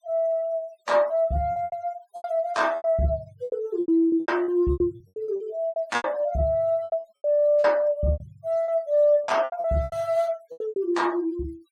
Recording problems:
noise reduction artefacts; signal-to-artefact ratio 26 dB
packet loss; 16% of the sound replaced, filled with repeated pitch periods

